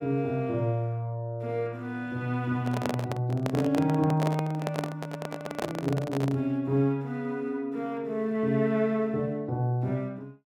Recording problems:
microphone handling noise; from 2.5 to 6.5 s; peak +2 dB vs average level

